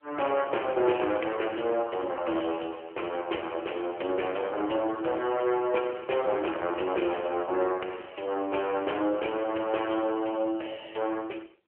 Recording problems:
telephone audio; 300 Hz to 3.1 kHz, AMR-NB

